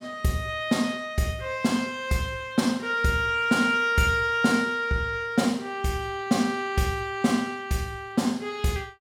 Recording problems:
none

